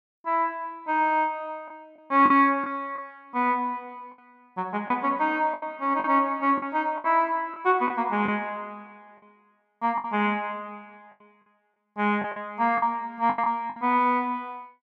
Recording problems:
packet loss; 6% of the sound replaced, filled with the last packet

